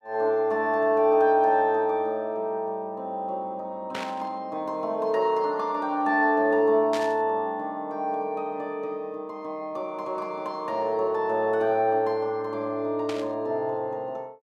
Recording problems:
static burst; at 4 s, at 7 s and at 13 s; peak -5 dB vs average level

